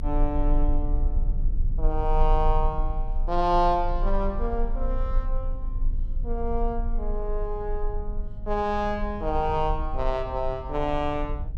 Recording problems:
low-frequency rumble; below 38 Hz, strongest tone 26 Hz, SNR 2 dB

